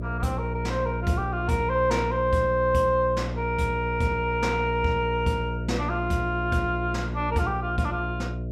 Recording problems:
electrical hum; 60 Hz, harmonics up to 660 Hz, SNR 5 dB

